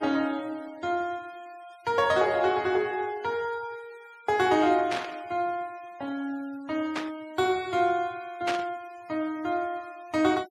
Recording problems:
noise reduction artefacts; signal-to-artefact ratio 24 dB
burst of static; at 5 s, at 7 s and at 8.5 s; peak +1 dB vs average level

